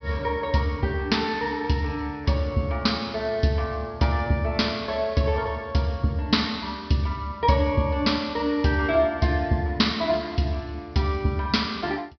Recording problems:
treble cut off; nothing above 5.5 kHz

